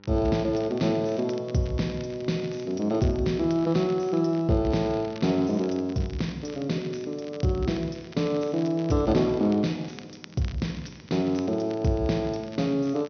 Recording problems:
low-pass filter; nothing above 6.2 kHz
mains hum; 50 Hz, harmonics up to 1.5 kHz, SNR 28 dB
crackling; vinyl, SNR 22 dB

